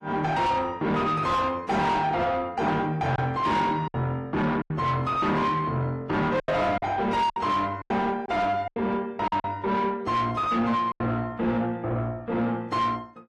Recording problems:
codec artefacts; AAC, log-spectral distance 2 dB, nothing above 13.1 kHz
distortion; soft clipping, signal-to-distortion ratio 7 dB
lost packets; 5% of the sound replaced, filled with silence

